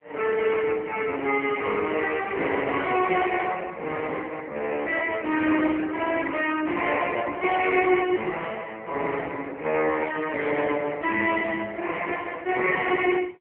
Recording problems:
telephone audio; 260 Hz to 3.2 kHz, AMR-NB
burst of static; at 8.5 s; peak -9 dB vs average level

